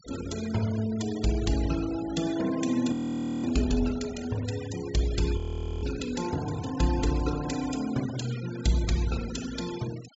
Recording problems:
treble missing; nothing above 8 kHz
noise reduction artefacts; signal-to-artefact ratio 14 dB
audio freezing; at 3 s for 0.5 s and at 5.5 s

